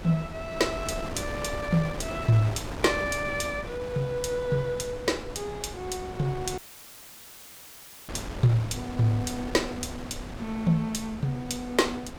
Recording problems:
wind on the microphone; below 840 Hz, SNR 10 dB
dropout; at 6.5 s for 1.5 s; filled with static

